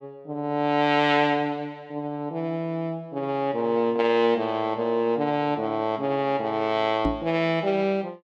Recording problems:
microphone bump; at 7 s; peak +2 dB vs average level

